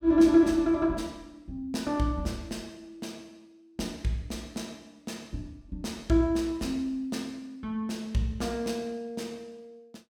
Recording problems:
none

